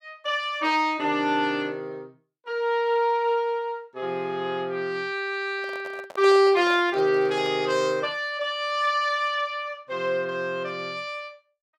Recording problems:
microphone handling noise; from 5.5 to 7.5 s; peak -10 dB vs average level

